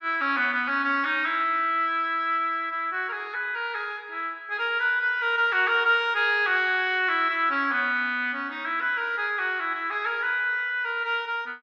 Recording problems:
treble missing; nothing above 8 kHz

